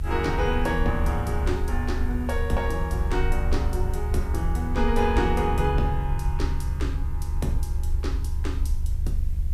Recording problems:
electrical hum; 50 Hz, harmonics up to 400 Hz, SNR 11 dB
hiss; slope -1 dB per octave, SNR 27 dB
rumble; below 72 Hz, strongest tone 24 Hz, SNR 0 dB

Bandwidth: 15 kHz